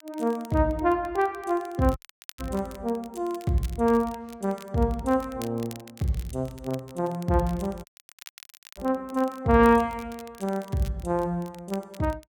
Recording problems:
crackle; vinyl, SNR 22 dB
audio cutting out; at 2 s and at 8 s for 1 s

